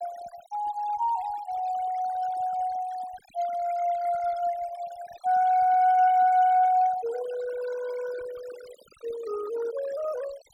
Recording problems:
denoising artefacts; signal-to-artefact ratio 18 dB

